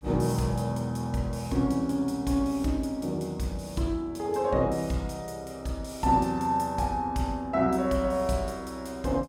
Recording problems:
none

